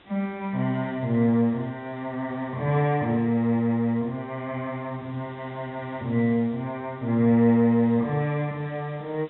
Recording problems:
treble missing; nothing above 3.8 kHz
hiss; SNR 28 dB

